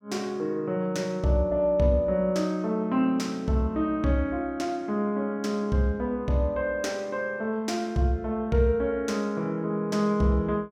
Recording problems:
none

